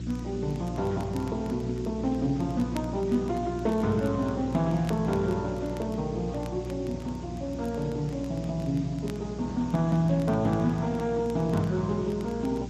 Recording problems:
lossy compression; Speex, log-spectral distance 4 dB
hum; 60 Hz, harmonics up to 360 Hz, SNR 9 dB
hiss; slope 0 dB per octave, SNR 23 dB
crackle; vinyl, SNR 25 dB

